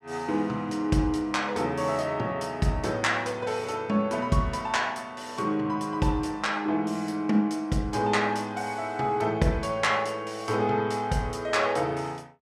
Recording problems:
none

